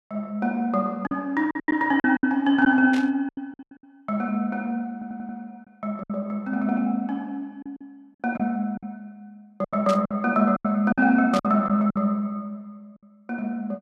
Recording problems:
lost packets; 9% of the sound replaced, filled with silence
burst of static; at 3 s, at 10 s and at 11 s; peak -6 dB vs average level
audio stuttering; at 5 s

